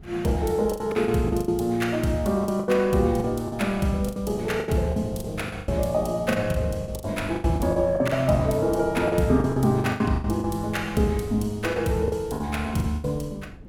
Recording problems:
wind noise; below 220 Hz, SNR 18 dB
lost packets; 14% of the sound replaced, filled with the last packet

